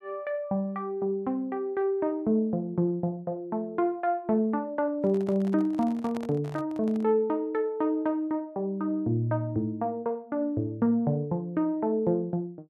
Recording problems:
handling noise; from 5 to 7 s; peak -8 dB vs average level

